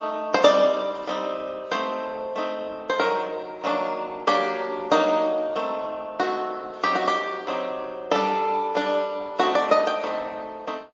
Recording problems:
lossy compression; MP3, then Opus, log-spectral distance 3 dB, nothing above 7.1 kHz

